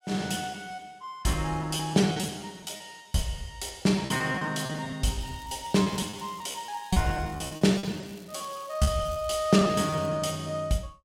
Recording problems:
lost packets; 14% of the sound replaced, filled with repeated pitch periods
crackle; from 5 to 10 s; loose cable, SNR 24 dB

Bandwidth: 16 kHz